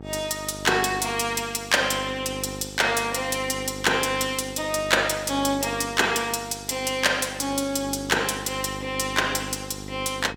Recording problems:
hum; 50 Hz, harmonics up to 1.3 kHz, SNR 14 dB

